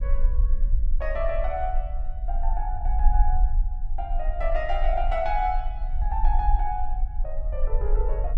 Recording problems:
low-frequency rumble; below 44 Hz, strongest tone 20 Hz, SNR -3 dB

